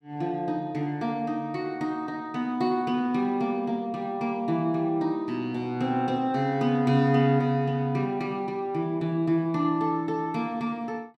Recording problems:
none

